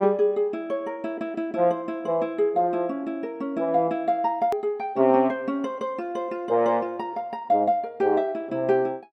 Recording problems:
click at an edit; at 4.5 s

